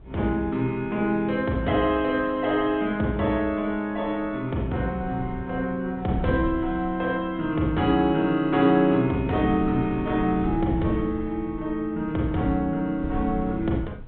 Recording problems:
treble cut off; nothing above 4 kHz
wind noise; below 140 Hz, SNR 15 dB

